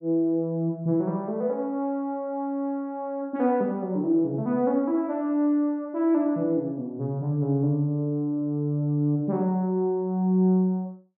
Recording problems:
none

